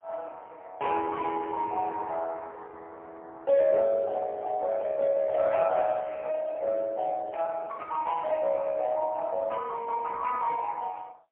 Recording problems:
phone line; 370 Hz to 3.4 kHz, AMR-NB, then MP3

